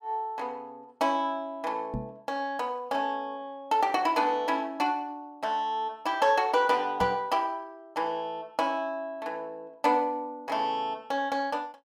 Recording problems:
knock on the microphone; at 2 s and at 7 s; peak -2 dB vs average level

